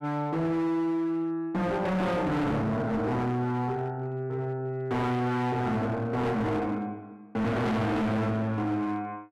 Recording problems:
distortion; hard clipping, signal-to-distortion ratio 6 dB

